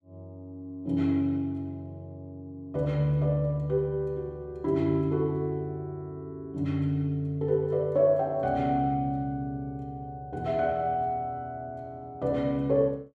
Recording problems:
none

